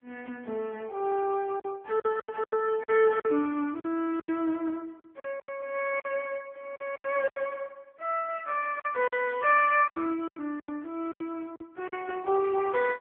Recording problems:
phone line; 260 Hz to 3.4 kHz, AMR-NB
lost packets; 10% of the sound replaced, filled with silence

